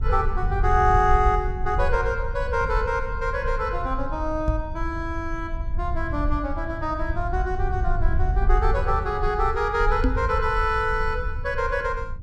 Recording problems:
low-frequency rumble; below 68 Hz, SNR 4 dB
knock on the microphone; at 4.5 s and at 10 s; peak +6 dB vs average level

